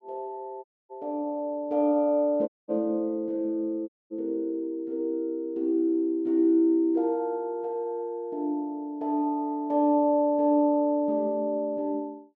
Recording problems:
dropout; at 0.5 s, at 2.5 s and at 4 s

